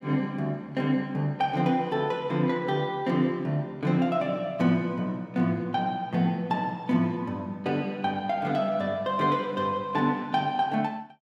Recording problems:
none

